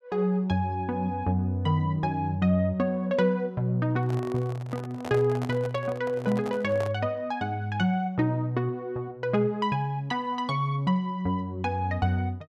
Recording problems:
microphone handling noise; from 4 to 7 s; peak -6 dB vs average level

